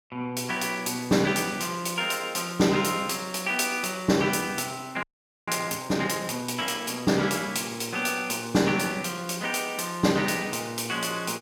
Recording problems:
frozen audio; at 5 s

